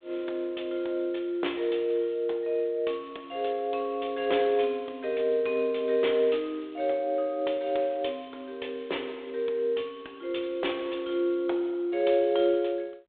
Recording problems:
phone line; 280 Hz to 3.6 kHz, G.726

